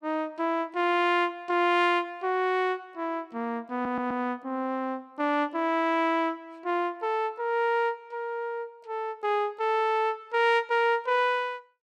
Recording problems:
stutter; at 3.5 s

